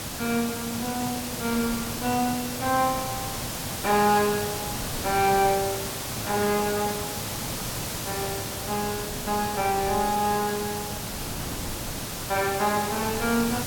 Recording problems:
background hiss; slope -2 dB per octave, SNR 4 dB
wind noise; below 420 Hz, SNR 16 dB

